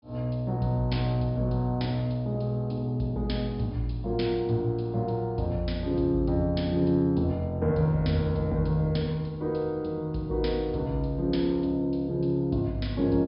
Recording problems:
treble cut off; nothing above 5.5 kHz

